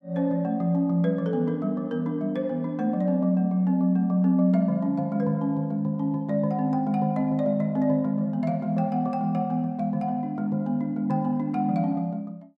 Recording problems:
none

